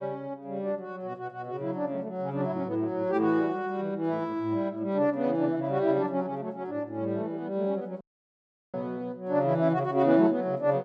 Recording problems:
audio cutting out; at 8 s for 0.5 s

